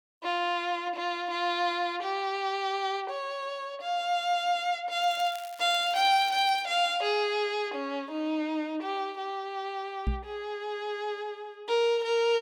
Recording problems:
crackling; from 5 to 6.5 s; loose cable, SNR 19 dB
microphone thump; at 10 s; peak +3 dB vs average level

